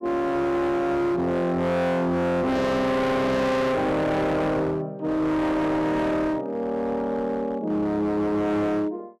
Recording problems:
distortion; hard clipping, uneven, signal-to-distortion ratio 6 dB

